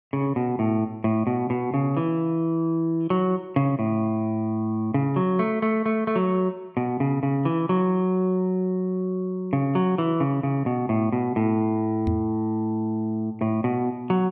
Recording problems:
microphone thump; at 12 s; peak +1 dB vs average level

